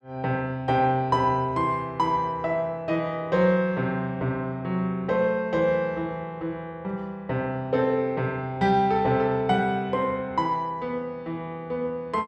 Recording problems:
none

